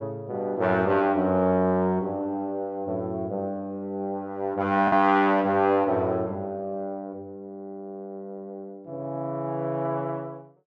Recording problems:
lost packets; 0.4% of the sound replaced, filled with the last packet

